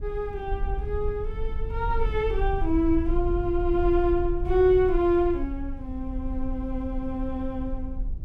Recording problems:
rumble; below 56 Hz, SNR 7 dB

